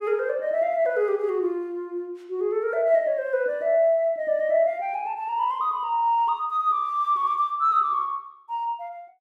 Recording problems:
none

